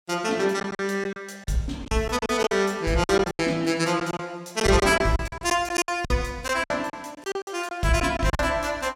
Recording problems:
lost packets; 13% of the sound replaced, filled with silence

